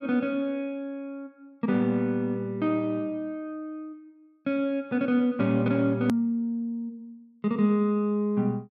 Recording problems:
edit click; at 6 s

